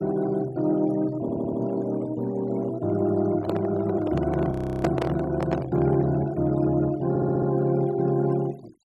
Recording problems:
noise reduction artefacts; signal-to-artefact ratio 21 dB
stutter; at 1 s and at 7 s
microphone handling noise; from 3.5 to 6 s; peak +3 dB vs average level
audio freezing; at 4.5 s

